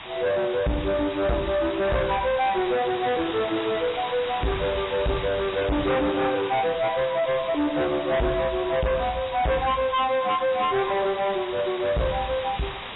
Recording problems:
lossy compression; AAC, then AAC, log-spectral distance 11 dB, nothing above 3.8 kHz
distortion; hard clipping, uneven, signal-to-distortion ratio 7 dB
hiss; SNR 11 dB

